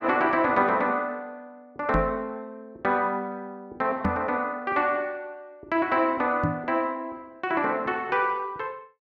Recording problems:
microphone thump; at 2 s, at 4 s and at 6.5 s; peak +3 dB vs average level

